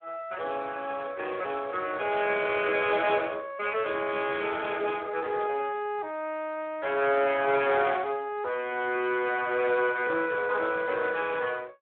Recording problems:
telephone audio; 280 Hz to 3.3 kHz, Speex

